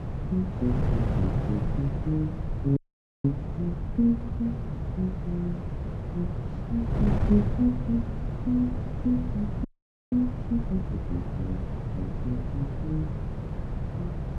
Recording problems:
hum; 50 Hz, harmonics up to 600 Hz, SNR 26 dB
wind on the microphone; below 170 Hz, SNR 2 dB
frozen audio; at 3 s and at 9.5 s

